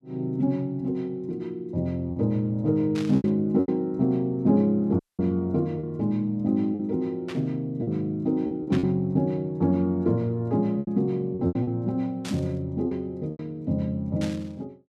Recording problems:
lost packets; 6% of the sound replaced, filled with repeated pitch periods
burst of static; 5 times, first at 3 s; peak -7 dB vs average level
audio cutting out; at 5 s

